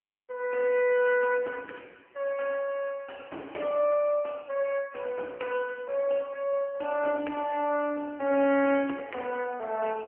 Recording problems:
telephone audio; 240 Hz to 2.6 kHz, AMR-NB

